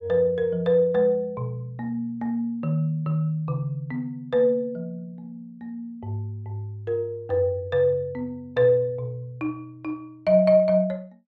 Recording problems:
none

